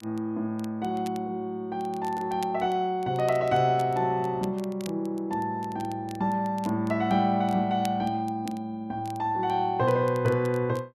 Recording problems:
crackling; vinyl, SNR 23 dB

